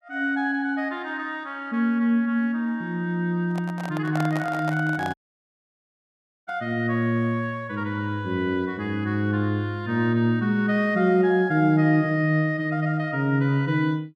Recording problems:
microphone handling noise; from 3.5 to 6.5 s; peak -3 dB vs average level
dropout; at 5 s for 1.5 s

